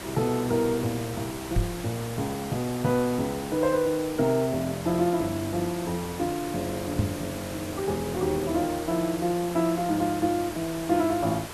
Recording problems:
hiss; slope -4 dB per octave, SNR 10 dB
microphone bump; at 1.5 s and at 7 s; peak +6 dB vs average level

